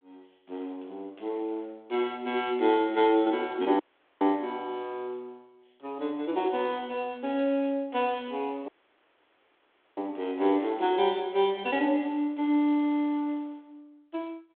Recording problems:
phone line; 260 Hz to 3.5 kHz, G.726
audio cutting out; at 4 s and at 8.5 s for 1.5 s

